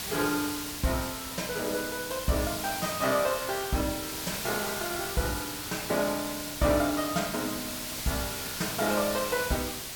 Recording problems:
background hiss; slope 0 dB per octave, SNR 4 dB

